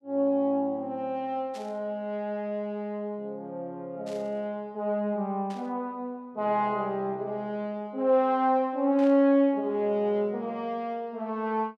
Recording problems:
static burst; 4 times, first at 1.5 s; peak -14 dB vs average level

